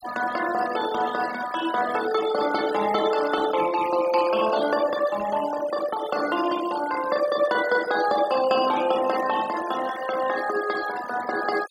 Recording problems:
denoising artefacts; signal-to-artefact ratio 12 dB

